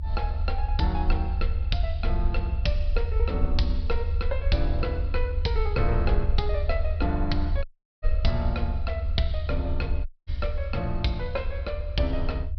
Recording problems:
treble cut off; nothing above 5.5 kHz
rumble; below 76 Hz, SNR -2 dB
dropout; at 7.5 s and at 10 s

